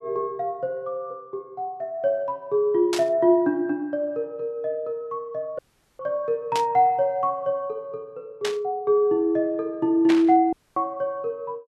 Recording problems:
burst of static; 4 times, first at 3 s; peak -1 dB vs average level
dropout; at 5.5 s and at 11 s

